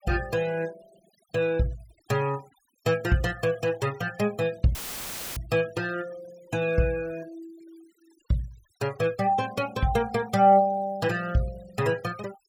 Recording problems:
noise reduction artefacts; signal-to-artefact ratio 21 dB
dropout; at 5 s for 0.5 s; filled with static

